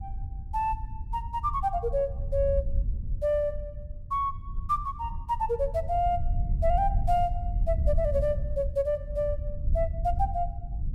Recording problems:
wind noise; below 74 Hz, SNR 4 dB

